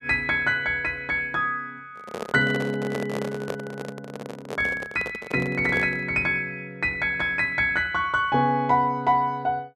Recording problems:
microphone handling noise; from 2 to 6 s; peak -2 dB vs average level

